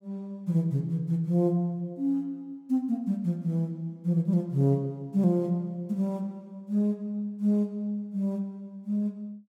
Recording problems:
none

